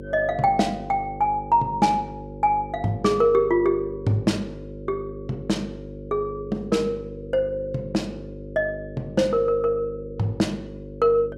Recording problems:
hum; 50 Hz, harmonics up to 550 Hz, SNR 13 dB

